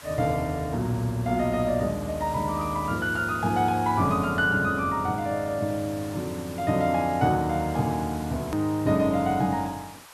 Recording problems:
background hiss; SNR 19 dB
hard cut with a click; at 8.5 s

